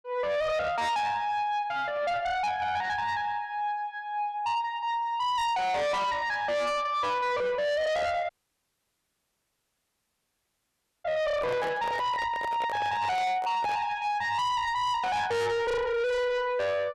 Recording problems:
distorted audio; soft clipping, signal-to-distortion ratio 6 dB
dropout; at 8.5 s for 3 s
microphone handling noise; from 11 to 14 s; peak -3 dB vs average level

